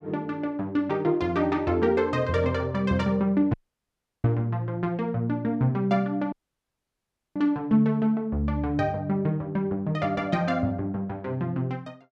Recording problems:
dropout; at 3.5 s for 0.5 s and at 6.5 s for 1 s

